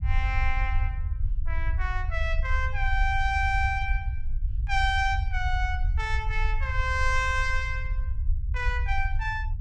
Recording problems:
low-frequency rumble; below 68 Hz, SNR 1 dB

